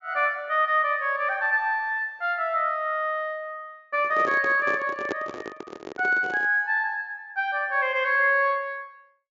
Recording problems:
treble cut off; nothing above 7.4 kHz
microphone handling noise; from 4 to 6.5 s; peak -2 dB vs average level

